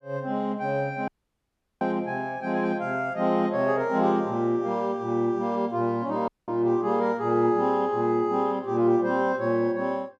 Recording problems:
dropout; at 1 s for 0.5 s and at 6.5 s

